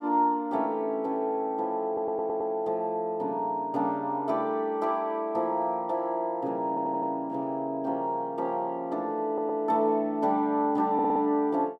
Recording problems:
audio stuttering; 4 times, first at 2 s

